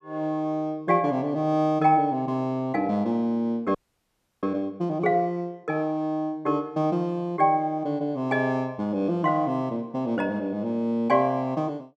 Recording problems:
frozen audio; at 4 s for 0.5 s

